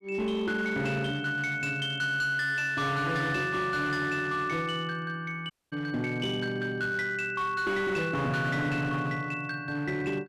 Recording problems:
distorted audio; hard clipping, uneven, signal-to-distortion ratio 12 dB
audio cutting out; at 5.5 s

